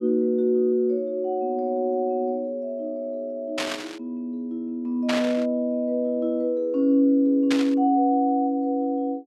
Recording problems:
static burst; at 3.5 s, at 5 s and at 7.5 s; peak 0 dB vs average level

